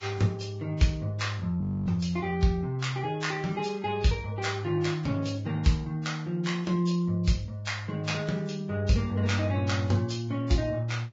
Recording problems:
codec artefacts; Vorbis, log-spectral distance 2 dB, nothing above 7.3 kHz
audio freezing; at 1.5 s

